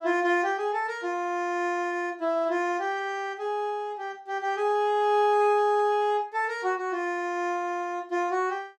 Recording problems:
none

